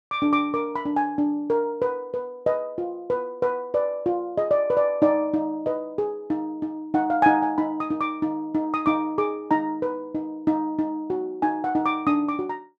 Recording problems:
none

